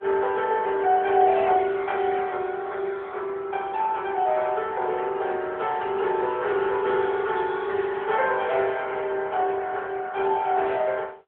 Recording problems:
phone line; 320 Hz to 3.7 kHz, AMR-NB

